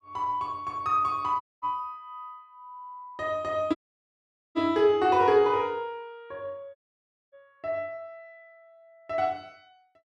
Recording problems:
dropout; at 1.5 s, at 4 s for 1 s and at 7 s for 0.5 s

